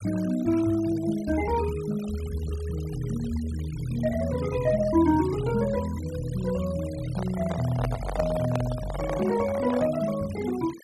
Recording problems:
noise reduction artefacts; signal-to-artefact ratio 17 dB
microphone handling noise; from 7 to 10 s; peak 0 dB vs average level

